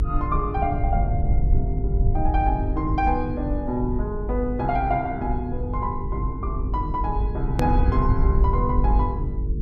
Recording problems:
mains hum; 50 Hz, harmonics up to 450 Hz, SNR 9 dB
rumble; below 78 Hz, SNR -1 dB
click at an edit; at 7.5 s

